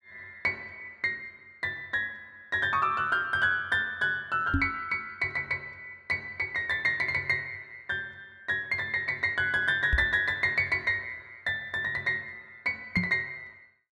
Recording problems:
knock on the microphone; at 4.5 s, at 10 s and at 13 s; peak +4 dB vs average level

